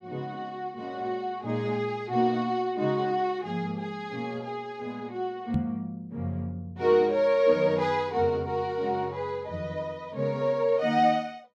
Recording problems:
microphone thump; at 5.5 s; peak +4 dB vs average level

